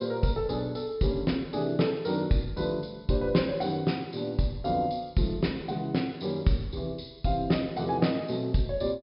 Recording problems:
treble missing; nothing above 5.5 kHz

